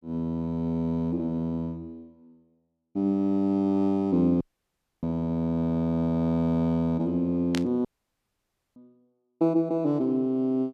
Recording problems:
audio cutting out; at 4.5 s for 0.5 s and at 8 s for 1 s
burst of static; at 7.5 s; peak -3 dB vs average level

